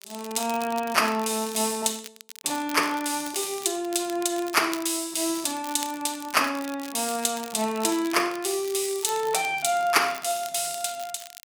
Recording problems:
crackle; vinyl, SNR 15 dB

